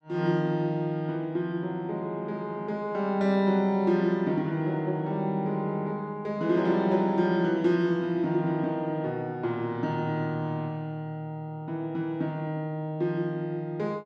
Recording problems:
none

